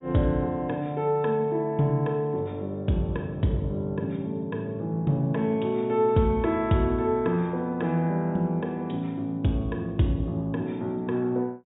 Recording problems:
treble cut off; nothing above 4 kHz

